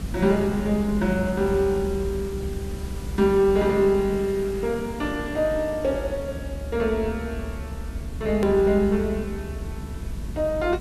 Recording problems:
hum; 50 Hz, harmonics up to 500 Hz, SNR 21 dB
background hiss; SNR 19 dB
low-frequency rumble; below 130 Hz, SNR 11 dB
hard cut with a click; at 8.5 s

